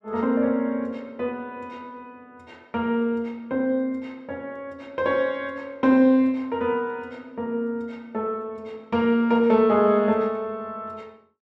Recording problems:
none

